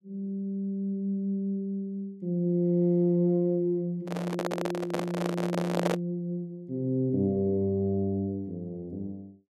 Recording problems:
microphone handling noise; from 4 to 6 s; peak +5 dB vs average level

